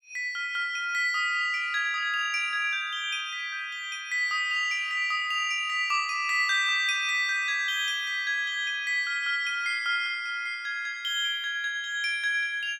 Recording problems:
none

